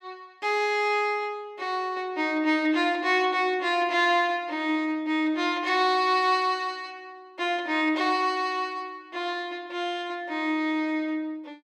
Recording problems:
none

